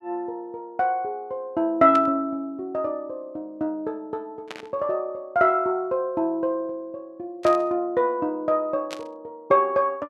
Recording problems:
burst of static; 4 times, first at 2 s; peak -6 dB vs average level

